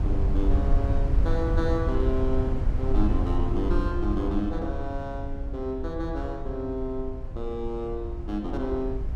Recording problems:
low-frequency rumble; below 74 Hz, SNR -1 dB

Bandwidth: 13.5 kHz